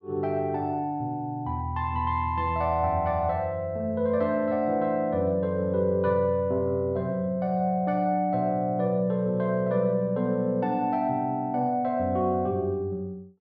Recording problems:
none

